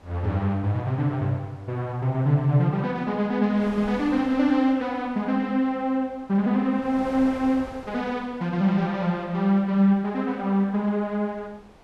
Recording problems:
wind noise; below 1.1 kHz, SNR 23 dB

